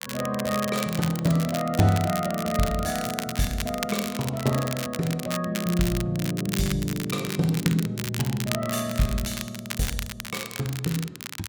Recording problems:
crackling; vinyl, SNR 8 dB

